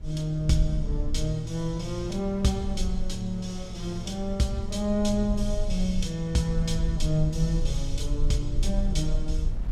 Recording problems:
low-frequency rumble; below 52 Hz, strongest tone 20 Hz, SNR 5 dB
wind on the microphone; below 520 Hz, SNR 25 dB

